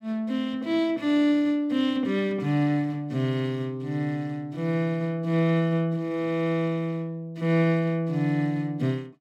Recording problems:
none

